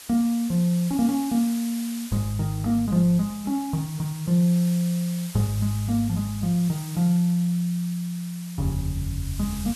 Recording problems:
background hiss; slope +2 dB per octave, SNR 15 dB

